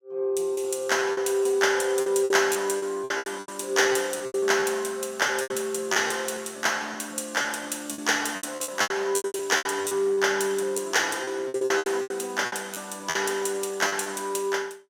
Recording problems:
packet loss; 14% of the sound replaced, filled with repeated pitch periods

